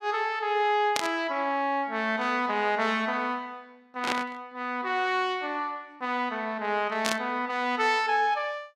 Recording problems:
burst of static; at 1 s, at 4 s and at 7 s; peak +4 dB vs average level

